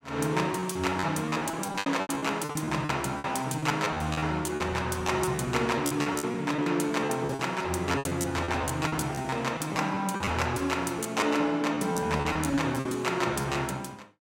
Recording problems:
packet loss; 17% of the sound replaced, filled with repeated pitch periods

